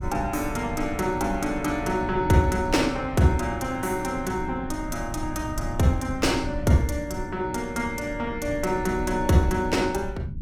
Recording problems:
rumble; below 120 Hz, SNR 11 dB

